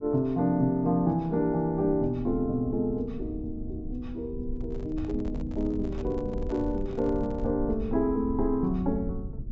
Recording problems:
treble cut off; nothing above 7.6 kHz
low-frequency rumble; below 96 Hz, SNR 10 dB
microphone handling noise; from 4.5 to 7.5 s; peak -12 dB vs average level

